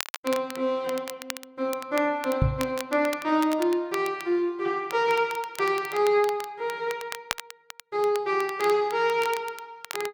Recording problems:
crackling; vinyl, SNR 14 dB
microphone bump; at 2.5 s; peak +6 dB vs average level

